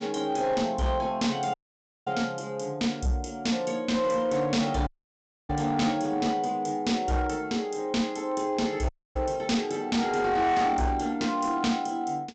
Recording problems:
treble missing; nothing above 8 kHz
distorted audio; hard clipping, uneven, signal-to-distortion ratio 12 dB
audio cutting out; at 1.5 s for 0.5 s, at 5 s for 0.5 s and at 9 s

